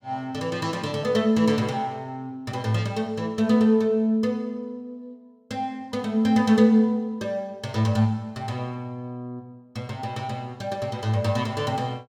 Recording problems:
none

